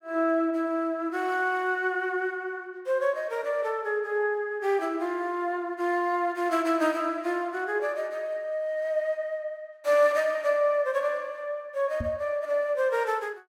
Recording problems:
microphone bump; at 12 s; peak -2 dB vs average level

